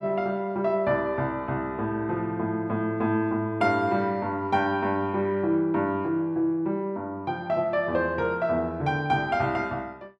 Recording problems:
none

